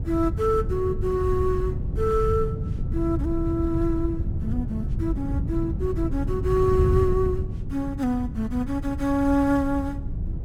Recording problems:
wind on the microphone; below 130 Hz, SNR 3 dB

